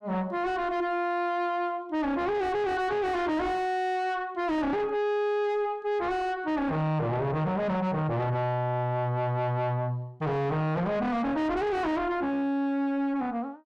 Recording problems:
distorted audio; soft clipping, signal-to-distortion ratio 6 dB

